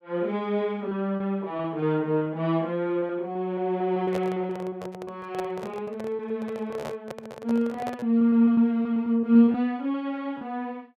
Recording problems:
packet loss; 9% of the sound replaced, filled with repeated pitch periods
handling noise; from 4 to 8 s; peak -4 dB vs average level

